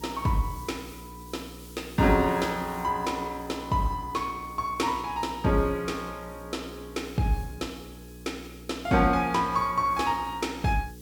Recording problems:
electrical hum; 60 Hz, harmonics up to 480 Hz, SNR 18 dB
hiss; SNR 23 dB

